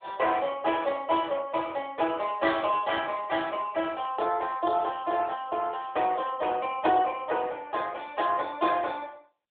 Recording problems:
telephone audio; 280 Hz to 3.5 kHz, AMR-NB

